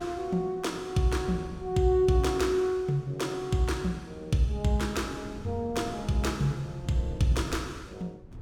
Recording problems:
wind noise; below 180 Hz, SNR 18 dB

